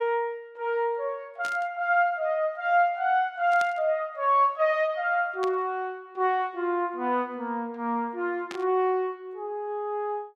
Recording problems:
burst of static; 4 times, first at 1.5 s; peak -7 dB vs average level

